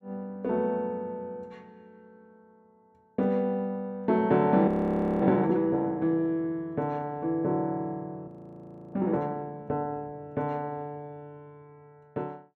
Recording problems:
frozen audio; at 4.5 s for 0.5 s and at 8.5 s for 0.5 s

